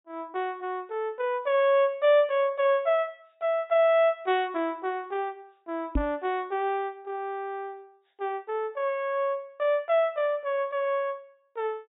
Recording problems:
treble missing; nothing above 4 kHz
microphone thump; at 6 s; peak +4 dB vs average level

